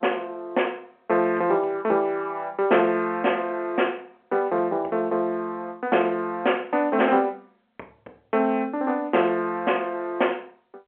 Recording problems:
telephone audio; 300 Hz to 3.2 kHz, G.711

